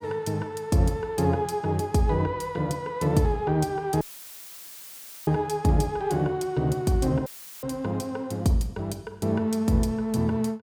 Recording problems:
audio cutting out; at 4 s for 1.5 s and at 7.5 s; filled with static

